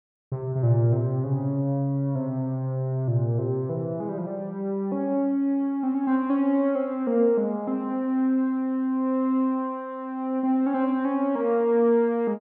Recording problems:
none

